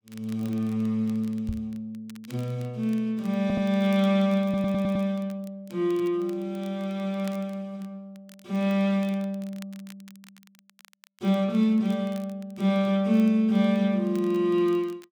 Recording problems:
crackle; vinyl, SNR 28 dB
knock on the microphone; at 1.5 s; peak -3 dB vs average level
audio stuttering; at 3.5 s and at 4.5 s

